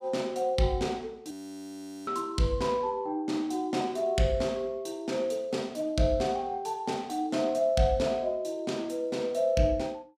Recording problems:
frozen audio; at 1.5 s for 1 s

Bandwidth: 15 kHz